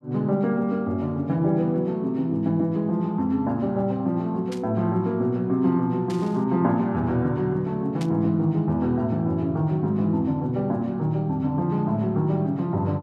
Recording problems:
burst of static; at 4.5 s, at 6 s and at 8 s; peak -10 dB vs average level

